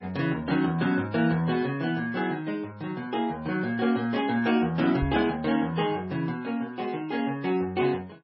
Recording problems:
lossy compression; MP3, log-spectral distance 2 dB, nothing above 5.5 kHz
knock on the microphone; at 5 s; peak +1 dB vs average level

